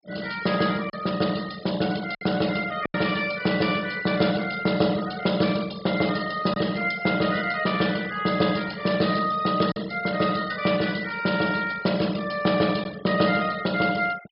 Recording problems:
treble cut off; nothing above 5.5 kHz
noise reduction artefacts; signal-to-artefact ratio 17 dB
lost packets; 1.7% of the sound replaced, filled with silence

